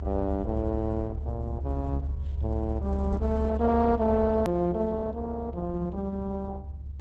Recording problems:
codec artefacts; Opus, log-spectral distance 2 dB, nothing above 13.1 kHz
low-frequency rumble; below 74 Hz, strongest tone 70 Hz, SNR 4 dB
click at an edit; at 4.5 s

